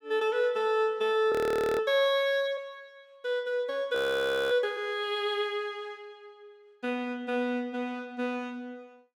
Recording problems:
frozen audio; at 1.5 s and at 4 s for 0.5 s

